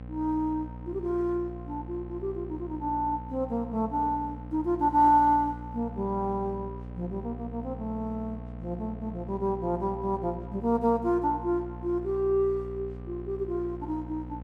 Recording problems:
hum; 60 Hz, harmonics up to 780 Hz, SNR 12 dB

